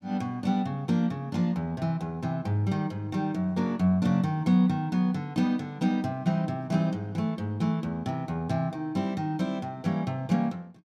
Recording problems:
none

